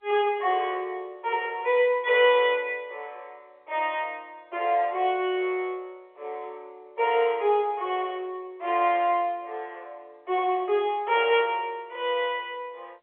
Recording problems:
phone line; 340 Hz to 3.7 kHz, G.711

